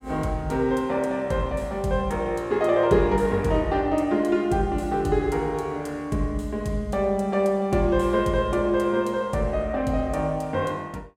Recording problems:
none

